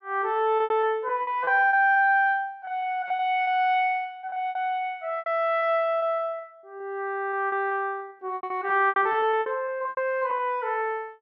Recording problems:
lost packets; 15% of the sound replaced, filled with repeated pitch periods

